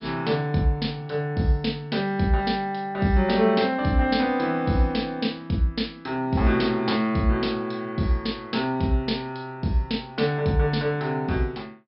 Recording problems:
treble missing; nothing above 5.3 kHz

